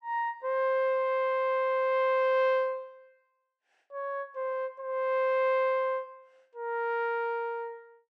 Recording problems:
none

